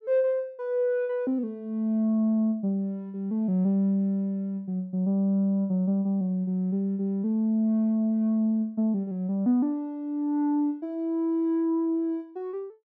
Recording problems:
none

